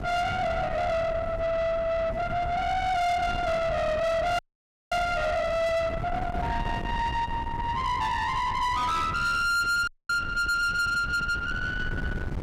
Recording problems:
distorted audio; soft clipping, signal-to-distortion ratio 8 dB
wind noise; below 750 Hz, SNR 8 dB
audio freezing; at 4.5 s for 0.5 s and at 10 s

